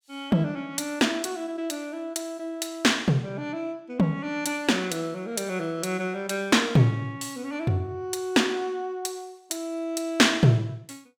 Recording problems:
none

